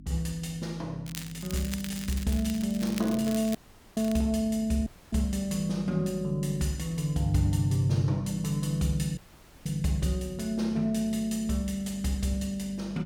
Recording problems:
hum; 50 Hz, harmonics up to 300 Hz, SNR 17 dB
crackle; from 1 to 4 s; loose cable, SNR 13 dB
dropout; at 3.5 s, at 5 s and at 9 s

